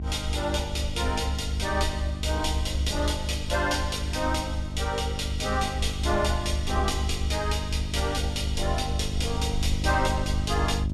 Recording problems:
electrical hum; 50 Hz, harmonics up to 650 Hz, SNR 6 dB
rumble; below 72 Hz, strongest tone 70 Hz, SNR 3 dB

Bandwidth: 13.5 kHz